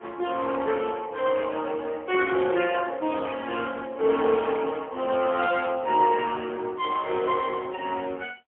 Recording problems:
telephone audio; 300 Hz to 3.3 kHz, AMR-NB, then MP3

